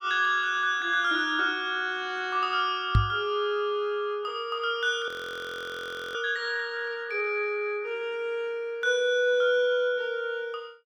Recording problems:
knock on the microphone; at 3 s; peak +8 dB vs average level
audio freezing; at 5 s for 1 s

